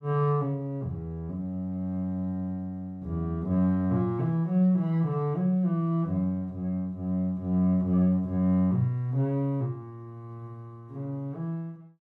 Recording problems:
none

